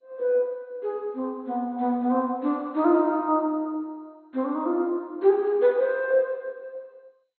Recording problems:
lossy codec; MP2, log-spectral distance 2 dB, nothing above 3.5 kHz

